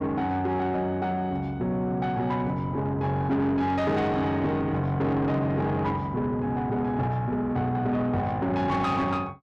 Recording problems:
distortion; soft clipping, signal-to-distortion ratio 11 dB

